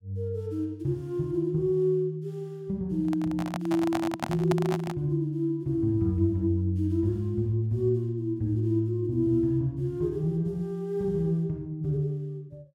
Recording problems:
handling noise; from 3 to 5 s; peak +2 dB vs average level

